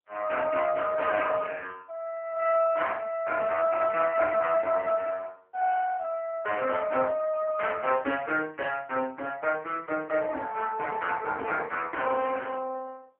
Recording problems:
telephone audio; 370 Hz to 3 kHz, AMR-NB

